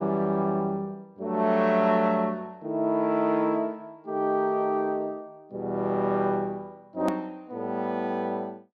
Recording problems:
edit click; at 7 s

